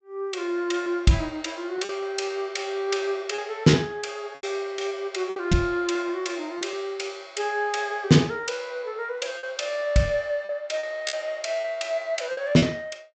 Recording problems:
low-pass filter; nothing above 8 kHz
lost packets; 6% of the sound replaced, filled with repeated pitch periods

